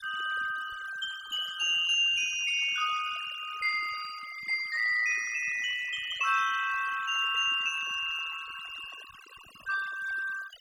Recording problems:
denoising artefacts; signal-to-artefact ratio 15 dB

